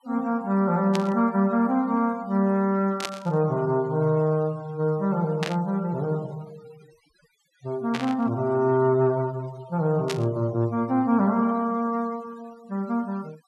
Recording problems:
denoising artefacts; signal-to-artefact ratio 26 dB
burst of static; 5 times, first at 1 s; peak -1 dB vs average level

